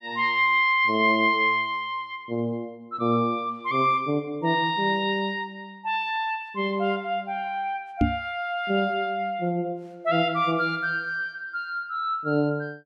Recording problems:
microphone bump; at 8 s; peak +6 dB vs average level

